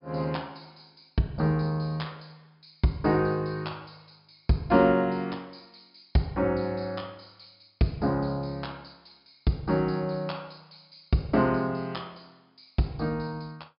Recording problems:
low-pass filter; nothing above 5.5 kHz

